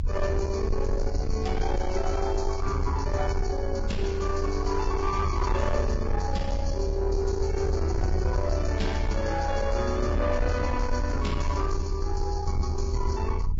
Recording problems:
lossy compression; Vorbis, log-spectral distance 2 dB, nothing above 6.5 kHz
distortion; soft clipping, signal-to-distortion ratio 10 dB
rumble; below 78 Hz, SNR 1 dB

